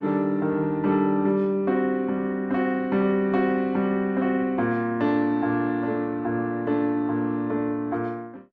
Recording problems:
lossy compression; Opus, log-spectral distance 2 dB

